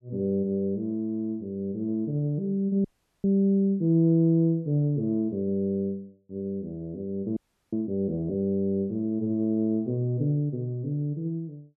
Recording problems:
audio freezing; at 3 s and at 7.5 s

